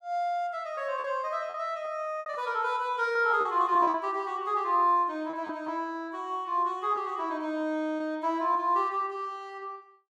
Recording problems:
packet loss; 5% of the sound replaced, filled with repeated pitch periods

